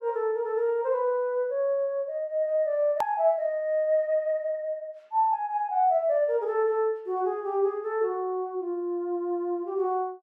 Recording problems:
click at an edit; at 3 s

